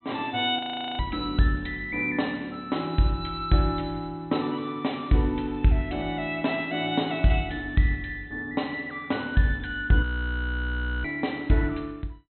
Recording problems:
treble cut off; nothing above 4.1 kHz
audio freezing; at 0.5 s and at 10 s for 1 s

